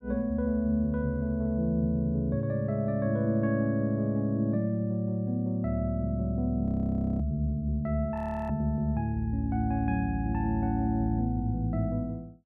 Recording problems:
frozen audio; at 6.5 s for 0.5 s and at 8 s

